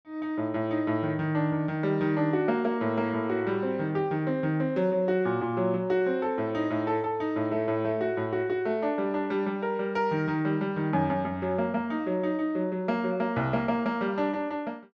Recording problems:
none

